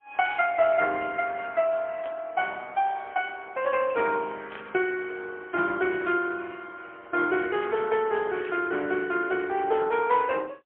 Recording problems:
telephone audio; 220 Hz to 3.3 kHz, AMR-NB, then MP3
burst of static; 4 times, first at 2 s; peak -12 dB vs average level

